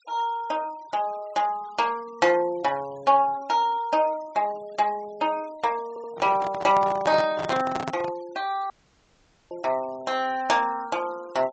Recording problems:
treble missing; nothing above 8 kHz
noise reduction artefacts; signal-to-artefact ratio 24 dB
audio stuttering; at 6 s
handling noise; from 6 to 8 s; peak -2 dB vs average level
audio cutting out; at 8.5 s for 1 s

